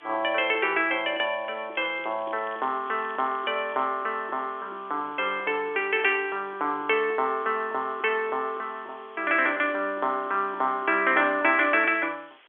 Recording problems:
telephone audio; 260 Hz to 3.4 kHz, G.711
hiss; SNR 28 dB
crackling; from 2 to 4 s; loose cable, SNR 27 dB

